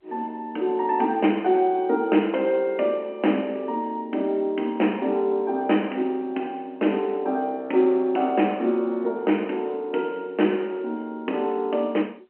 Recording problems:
phone line; 220 Hz to 3.2 kHz, G.711

